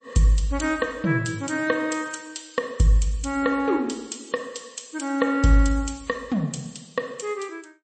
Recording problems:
lossy codec; MP3, log-spectral distance 6 dB, nothing above 8.2 kHz

